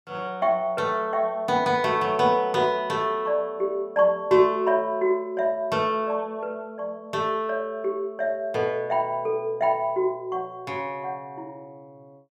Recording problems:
none

